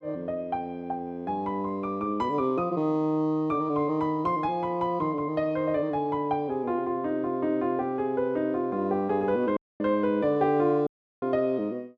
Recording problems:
audio cutting out; at 9.5 s and at 11 s

